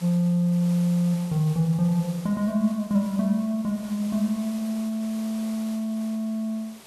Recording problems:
hiss; slope -3 dB per octave, SNR 20 dB

